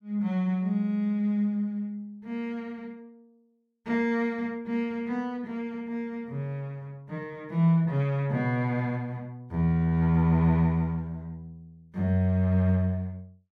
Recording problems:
none

